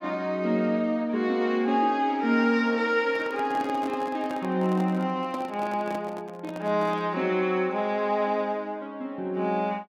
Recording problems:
microphone handling noise; from 3 to 7 s; peak -7 dB vs average level

